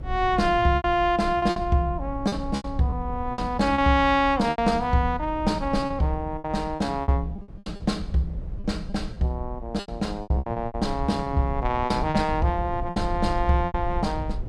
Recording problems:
rumble; below 86 Hz, SNR 10 dB
packet loss; 12% of the sound replaced, filled with repeated pitch periods

